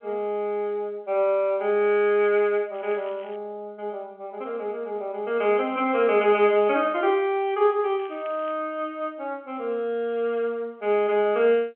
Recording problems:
telephone audio; 240 Hz to 3.5 kHz, G.711
crackle; at 3 s and at 8 s; loose cable, SNR 27 dB

